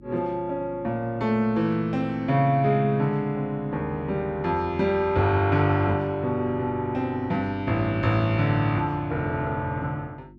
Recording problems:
electrical hum; 50 Hz, harmonics up to 350 Hz, SNR 24 dB

